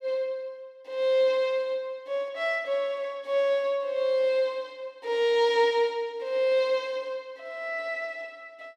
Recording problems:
none

